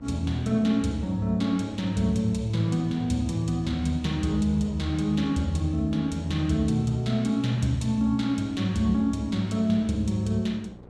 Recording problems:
electrical hum; 60 Hz, harmonics up to 1.1 kHz, SNR 25 dB
wind on the microphone; below 500 Hz, SNR 28 dB

